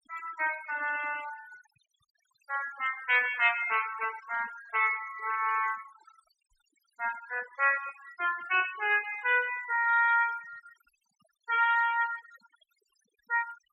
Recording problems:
noise reduction artefacts; signal-to-artefact ratio 17 dB

